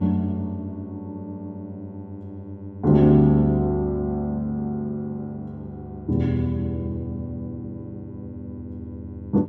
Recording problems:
hum; 50 Hz, harmonics up to 1 kHz, SNR 16 dB

